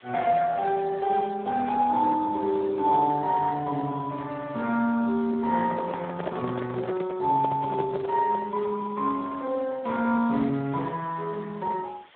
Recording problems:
telephone audio; 110 Hz to 4 kHz, Speex
hiss; SNR 27 dB
handling noise; from 5.5 to 8.5 s; peak -2 dB vs average level

